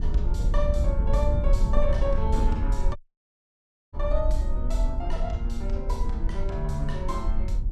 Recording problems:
hum; 50 Hz, harmonics up to 500 Hz, SNR 18 dB
low-frequency rumble; below 46 Hz, strongest tone 26 Hz, SNR 1 dB
wind noise; below 62 Hz, SNR -3 dB
dropout; at 3 s for 1 s

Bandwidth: 15 kHz